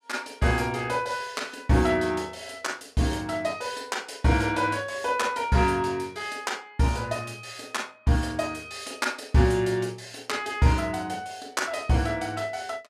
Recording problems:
none

